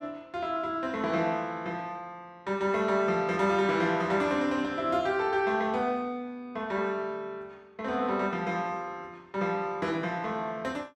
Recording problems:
none

